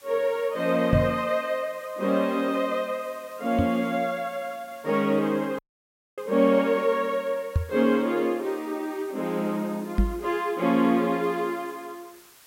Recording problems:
background hiss; SNR 25 dB
microphone bump; 4 times, first at 1 s; peak +6 dB vs average level
audio cutting out; at 5.5 s for 0.5 s

